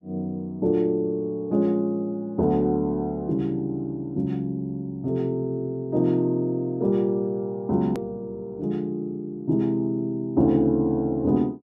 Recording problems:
edit click; at 8 s

